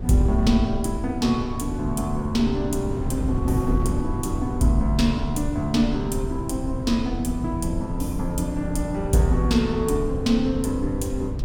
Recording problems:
rumble; below 96 Hz, strongest tone 32 Hz, SNR 14 dB
wind noise; below 140 Hz, SNR 6 dB

